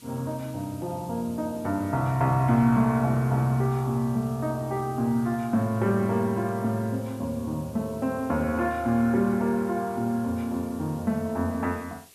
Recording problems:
hiss; SNR 24 dB

